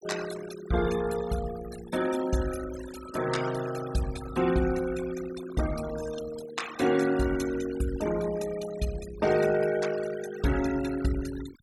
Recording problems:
noise reduction artefacts; signal-to-artefact ratio 12 dB

